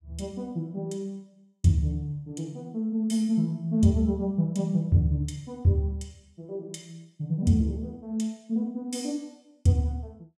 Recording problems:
none

